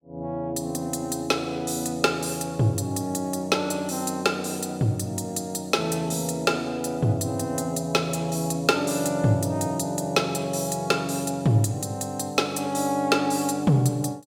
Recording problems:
none

